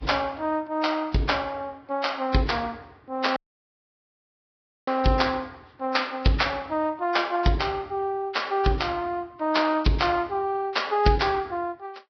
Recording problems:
lossy compression; Vorbis, log-spectral distance 4 dB, nothing above 5.3 kHz
dropout; at 3.5 s for 1.5 s

